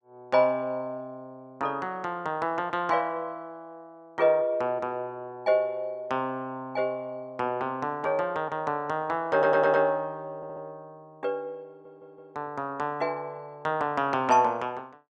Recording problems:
stutter; at 9.5 s, at 10 s and at 12 s

